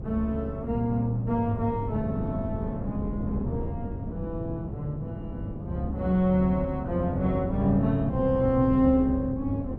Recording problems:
wind noise; below 240 Hz, SNR 9 dB

